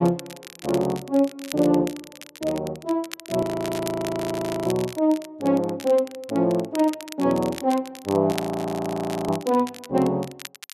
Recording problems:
crackling; vinyl, SNR 16 dB
frozen audio; at 3.5 s for 1 s and at 8.5 s for 1 s

